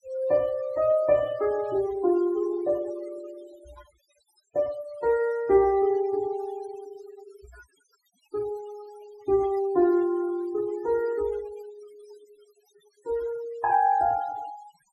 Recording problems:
noise reduction artefacts; signal-to-artefact ratio 20 dB

